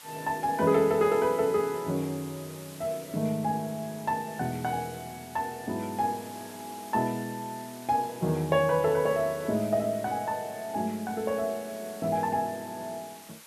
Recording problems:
background hiss; slope +1 dB per octave, SNR 17 dB

